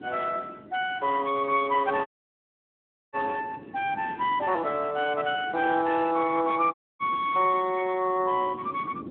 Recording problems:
phone line; 240 Hz to 3.5 kHz, Speex
wind noise; below 390 Hz, SNR 18 dB
dropout; at 2 s for 1 s and at 6.5 s

